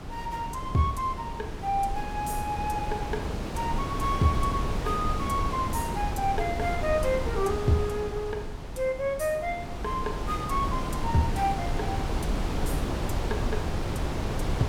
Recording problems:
wind on the microphone; below 400 Hz, SNR 3 dB

